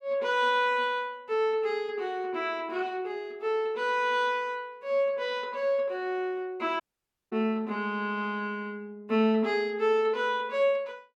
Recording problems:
audio cutting out; at 7 s for 0.5 s

